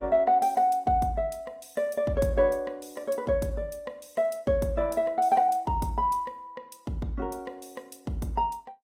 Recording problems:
lossy codec; Opus, log-spectral distance 2 dB, nothing above 16 kHz

